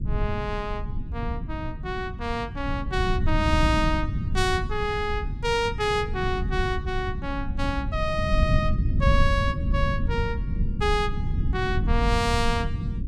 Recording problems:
rumble; below 120 Hz, SNR 1 dB

